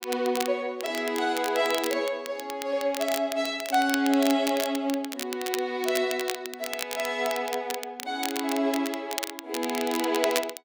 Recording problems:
crackling; vinyl, SNR 8 dB

